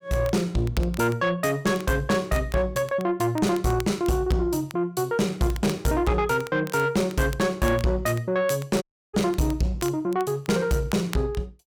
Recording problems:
distorted audio; soft clipping, signal-to-distortion ratio 11 dB
crackle; vinyl, SNR 20 dB
audio cutting out; at 9 s

